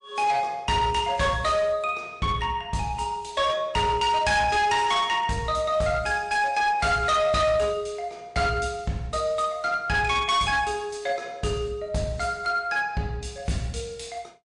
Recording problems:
lossy compression; MP3, log-spectral distance 2 dB, nothing above 8.2 kHz
distortion; hard clipping, uneven, signal-to-distortion ratio 11 dB

